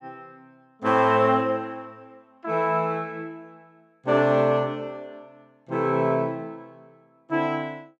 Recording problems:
none

